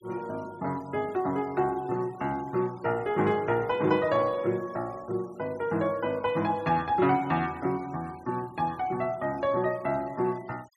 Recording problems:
denoising artefacts; signal-to-artefact ratio 25 dB

